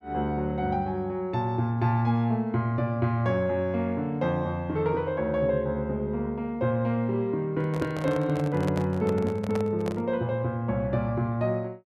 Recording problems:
microphone handling noise; from 7.5 to 10 s; peak -2 dB vs average level

